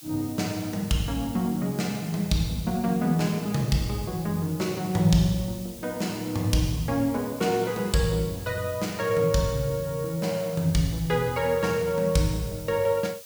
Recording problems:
hiss; SNR 16 dB

